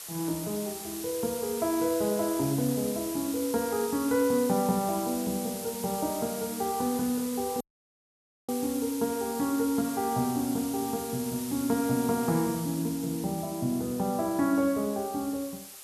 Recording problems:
hiss; slope +1 dB per octave, SNR 9 dB
dropout; at 7.5 s for 1 s

